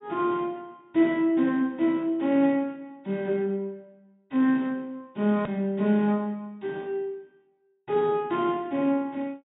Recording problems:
treble missing; nothing above 4 kHz
click at an edit; at 5.5 s

